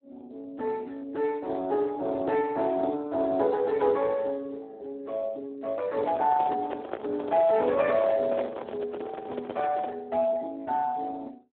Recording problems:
phone line; 240 Hz to 3 kHz, Speex
handling noise; from 6 to 10 s; peak -1 dB vs average level

